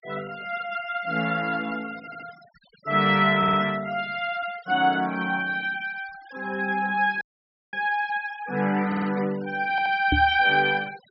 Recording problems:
treble missing; nothing above 5.5 kHz
denoising artefacts; signal-to-artefact ratio 22 dB
stutter; 4 times, first at 2 s
dropout; at 7 s for 0.5 s
knock on the microphone; at 10 s; peak +4 dB vs average level

